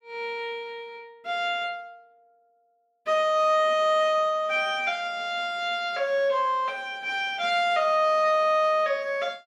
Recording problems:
none

